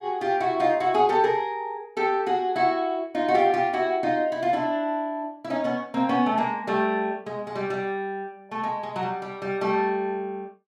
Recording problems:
none

